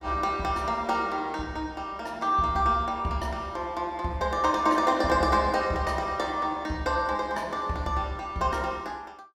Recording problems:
none

